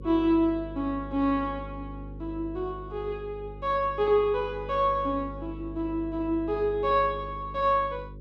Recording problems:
hum; 50 Hz, harmonics up to 550 Hz, SNR 14 dB

